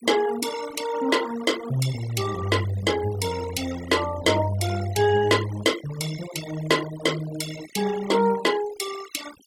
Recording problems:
noise reduction artefacts; signal-to-artefact ratio 12 dB

